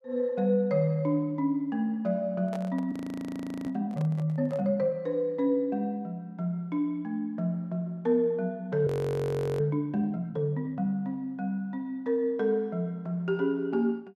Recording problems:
handling noise; from 2.5 to 4.5 s; peak -8 dB vs average level
frozen audio; at 3 s for 0.5 s and at 9 s for 0.5 s

